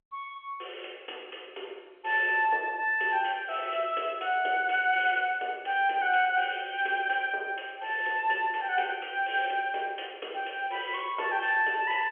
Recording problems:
telephone audio; 320 Hz to 3.3 kHz, G.711

